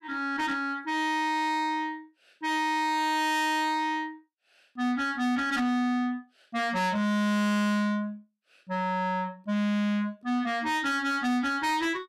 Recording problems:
distorted audio; soft clipping, signal-to-distortion ratio 7 dB

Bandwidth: 15 kHz